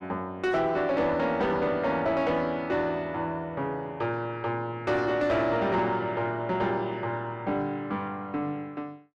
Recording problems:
distortion; soft clipping, signal-to-distortion ratio 11 dB

